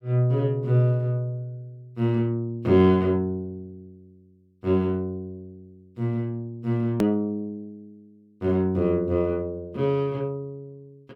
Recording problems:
hard cut with a click; at 7 s

